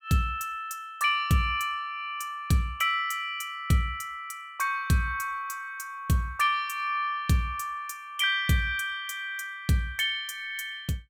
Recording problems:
none

